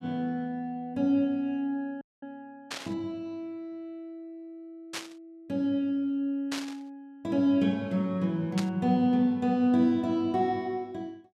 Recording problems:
audio freezing; at 2 s
static burst; 4 times, first at 2.5 s; peak -2 dB vs average level

